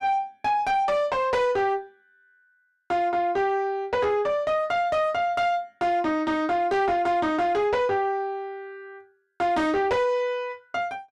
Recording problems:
distorted audio; soft clipping, signal-to-distortion ratio 11 dB

